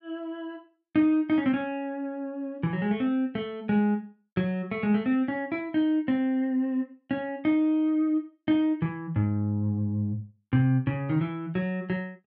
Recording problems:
none

